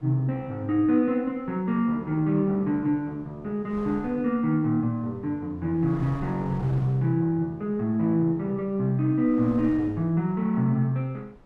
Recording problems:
wind on the microphone; below 550 Hz, SNR 22 dB

